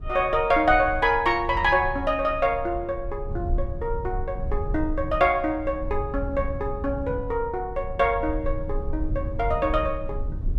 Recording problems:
low-frequency rumble; below 74 Hz, SNR 9 dB

